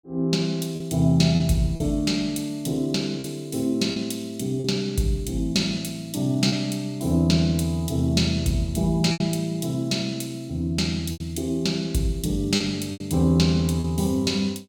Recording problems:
lost packets; 4% of the sound replaced, filled with repeated pitch periods

